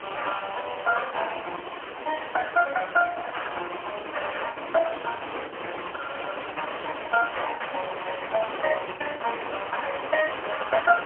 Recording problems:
telephone audio; 260 Hz to 3 kHz, AMR-NB, then MP3
background hiss; SNR 7 dB
lost packets; 8% of the sound replaced, filled with the last packet

